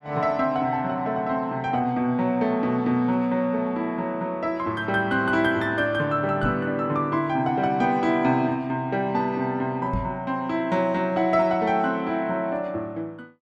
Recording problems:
knock on the microphone; at 6.5 s and at 10 s; peak -1 dB vs average level

